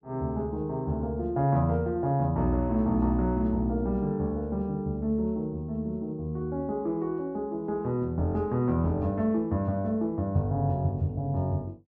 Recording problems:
none

